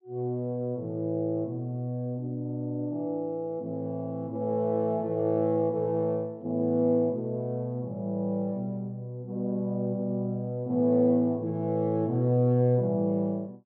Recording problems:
none

